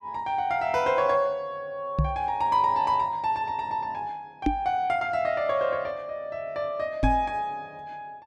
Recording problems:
microphone bump; at 2 s, at 4.5 s and at 7 s; peak +6 dB vs average level

